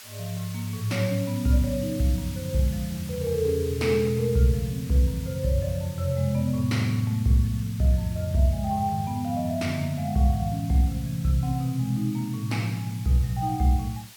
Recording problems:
hiss; slope +2 dB per octave, SNR 18 dB

